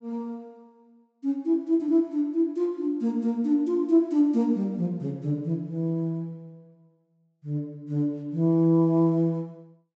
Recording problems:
low-pass filter; nothing above 8 kHz

